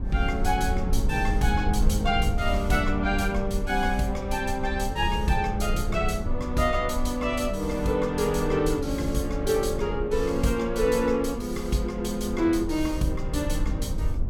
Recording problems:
rumble; below 76 Hz, SNR 5 dB

